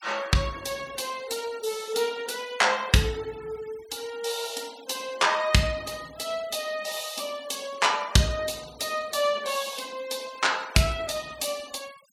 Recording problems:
noise reduction artefacts; signal-to-artefact ratio 19 dB

